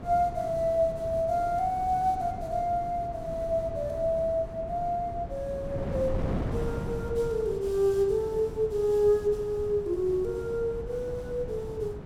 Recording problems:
wind on the microphone; below 320 Hz, SNR 10 dB

